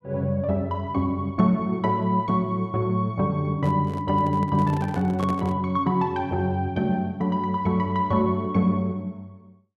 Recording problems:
microphone handling noise; from 3.5 to 5.5 s; peak -5 dB vs average level

